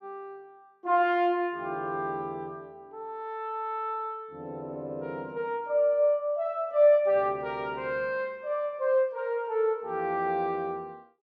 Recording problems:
none

